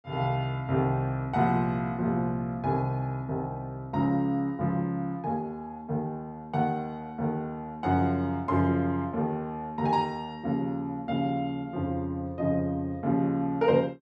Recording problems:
none

